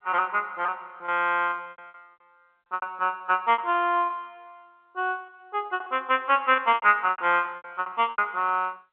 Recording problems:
phone line; 280 Hz to 3.4 kHz, G.711
lost packets; 14% of the sound replaced, filled with repeated pitch periods

